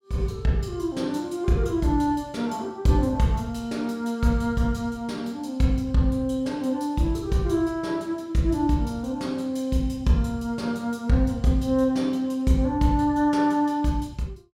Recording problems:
none

